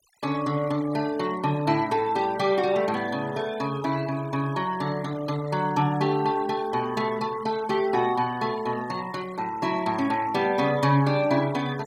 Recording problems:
noise reduction artefacts; signal-to-artefact ratio 19 dB

